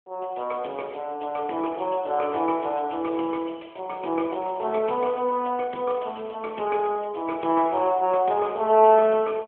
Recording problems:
phone line; 280 Hz to 3.3 kHz, AMR-NB

